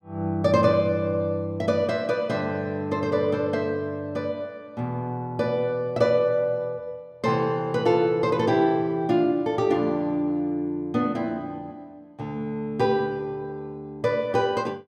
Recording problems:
none

